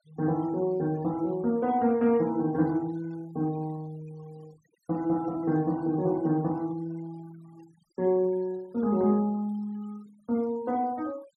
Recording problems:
noise reduction artefacts; signal-to-artefact ratio 27 dB

